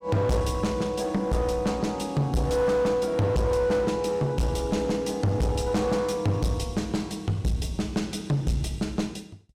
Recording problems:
distorted audio; hard clipping, uneven, signal-to-distortion ratio 7 dB

